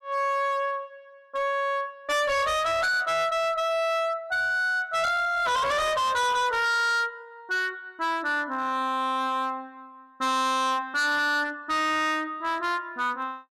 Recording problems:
distorted audio; hard clipping, signal-to-distortion ratio 6 dB

